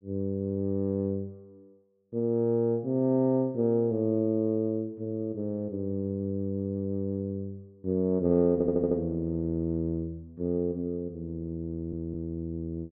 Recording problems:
audio stuttering; at 8.5 s and at 12 s

